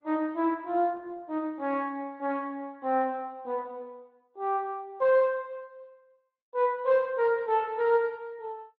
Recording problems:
lossy codec; Speex, then Opus, log-spectral distance 2 dB

